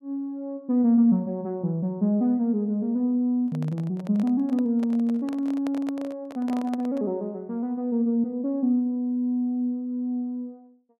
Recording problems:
handling noise; from 3.5 to 7 s; peak -8 dB vs average level

